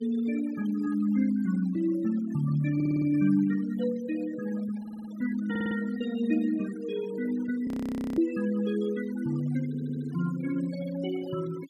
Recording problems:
denoising artefacts; signal-to-artefact ratio 17 dB
audio stuttering; 4 times, first at 3 s
frozen audio; at 7.5 s for 0.5 s

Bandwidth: 15 kHz